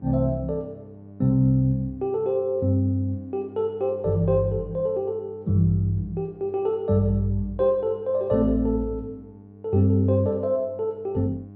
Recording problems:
electrical hum; 50 Hz, harmonics up to 800 Hz, SNR 21 dB

